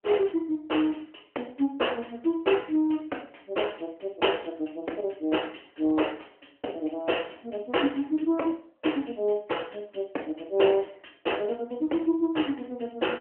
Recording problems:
phone line; 240 Hz to 3.1 kHz, AMR-NB

